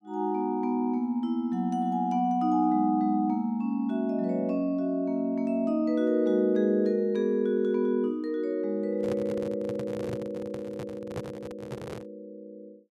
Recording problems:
handling noise; from 9 to 12 s; peak -5 dB vs average level

